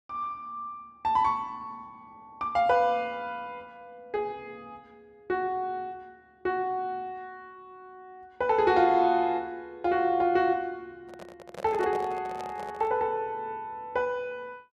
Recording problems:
handling noise; from 11 to 13 s; peak -5 dB vs average level

